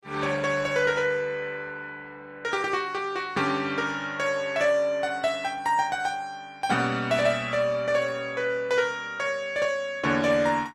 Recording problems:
lossy compression; Opus, log-spectral distance 3 dB, nothing above 15.6 kHz

